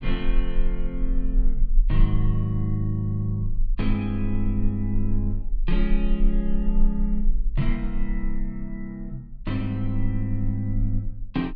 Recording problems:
low-frequency rumble; below 32 Hz, strongest tone 20 Hz, SNR 2 dB

